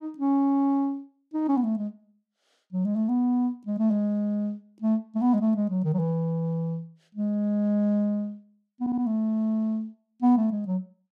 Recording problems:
stutter; at 9 s

